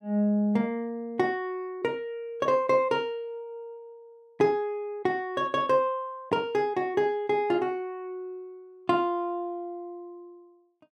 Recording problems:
none

